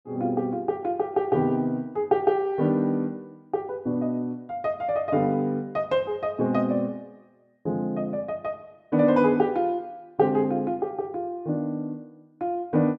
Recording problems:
none

